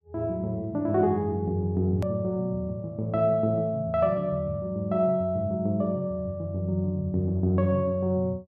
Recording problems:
hard cut with a click; at 2 s

